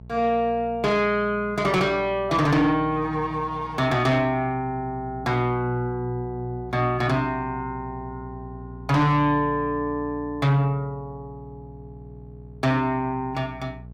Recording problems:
distorted audio; soft clipping, signal-to-distortion ratio 10 dB
hum; 60 Hz, harmonics up to 660 Hz, SNR 17 dB

